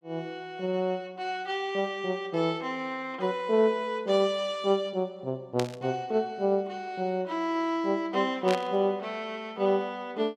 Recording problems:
static burst; at 5.5 s and at 8.5 s; peak -1 dB vs average level

